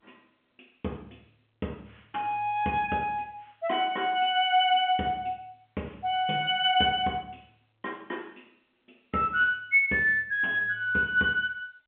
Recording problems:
telephone audio; 190 Hz to 3.7 kHz, G.711

